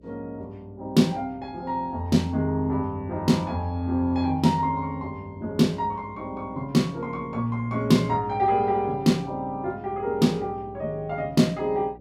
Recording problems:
hum; 60 Hz, harmonics up to 600 Hz, SNR 24 dB

